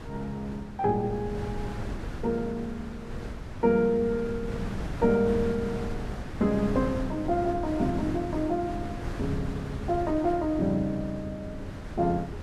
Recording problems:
wind noise; below 320 Hz, SNR 8 dB

